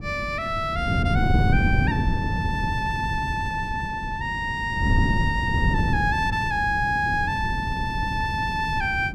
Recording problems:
wind on the microphone; below 180 Hz, SNR 2 dB

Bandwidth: 14.5 kHz